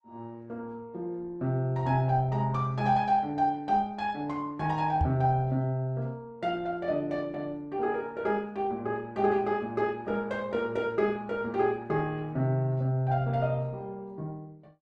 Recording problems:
lossy compression; Opus, log-spectral distance 2 dB
microphone thump; at 5 s; peak +5 dB vs average level

